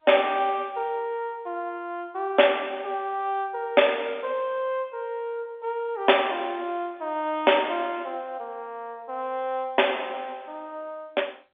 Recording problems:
telephone audio; 320 Hz to 3.6 kHz, G.711

